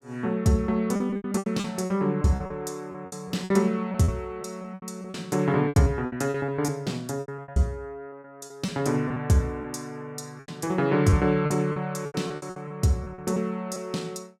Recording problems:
packet loss; 14% of the sound replaced, filled with repeated pitch periods

